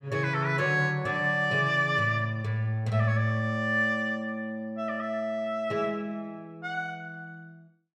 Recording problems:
none

